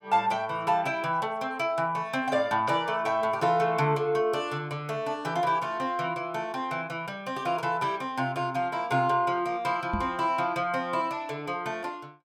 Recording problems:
microphone thump; at 10 s; peak +1 dB vs average level

